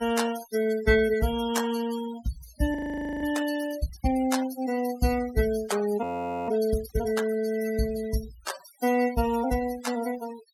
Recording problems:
denoising artefacts; signal-to-artefact ratio 13 dB
frozen audio; at 3 s and at 6 s

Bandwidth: 17.5 kHz